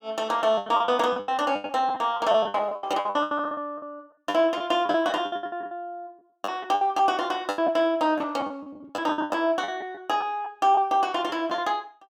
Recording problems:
lost packets; 18% of the sound replaced, filled with the last packet

